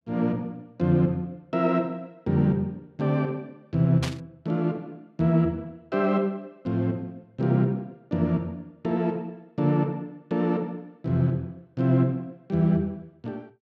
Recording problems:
burst of static; at 4 s; peak -2 dB vs average level

